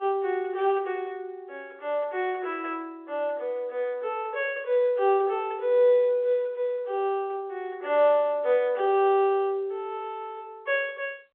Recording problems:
telephone audio; 320 Hz to 3.4 kHz, G.711

